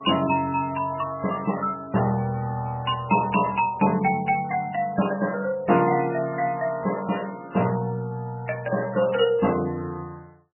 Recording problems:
codec artefacts; MP3, log-spectral distance 4 dB, nothing above 2.9 kHz

